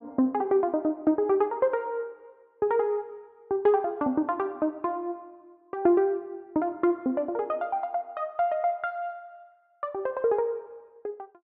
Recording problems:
none

